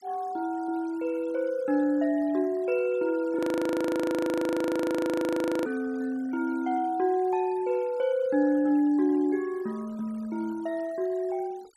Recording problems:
denoising artefacts; signal-to-artefact ratio 24 dB
audio freezing; at 3.5 s for 2.5 s

